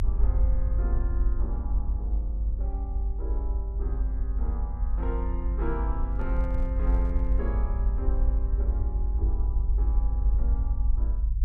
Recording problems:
rumble; below 54 Hz, strongest tone 50 Hz, SNR -11 dB
handling noise; from 6 to 7.5 s; peak -9 dB vs average level

